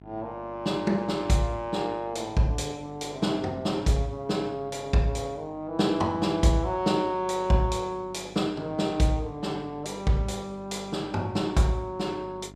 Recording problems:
hum; 50 Hz, harmonics up to 1.4 kHz, SNR 21 dB

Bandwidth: 14.5 kHz